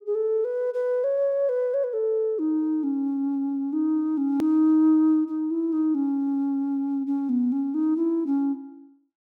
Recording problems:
hard cut with a click; at 4.5 s

